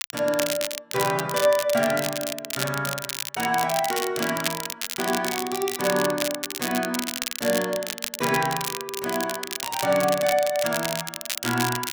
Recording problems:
crackling; vinyl, SNR 4 dB

